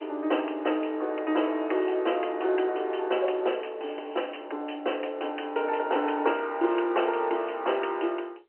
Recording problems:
phone line; 260 Hz to 3.1 kHz, G.711

